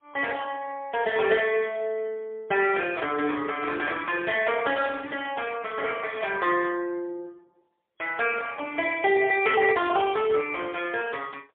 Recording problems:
phone line; 320 Hz to 3.4 kHz, AMR-NB, then MP3

